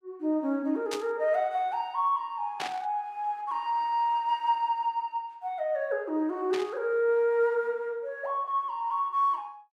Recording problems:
burst of static; at 1 s, at 2.5 s and at 6.5 s; peak -2 dB vs average level

